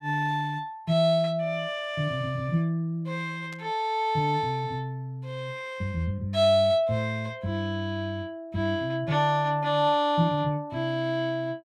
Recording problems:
static burst; at 3.5 s; peak -15 dB vs average level

